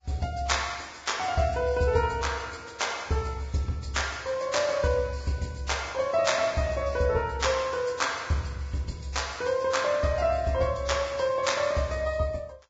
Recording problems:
codec artefacts; Vorbis, log-spectral distance 5 dB, nothing above 7.6 kHz

